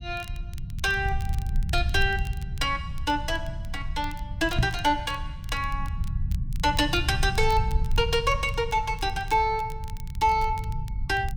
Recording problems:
low-frequency rumble; below 90 Hz, SNR 6 dB
crackling; vinyl, SNR 24 dB
microphone bump; at 4.5 s; peak +5 dB vs average level

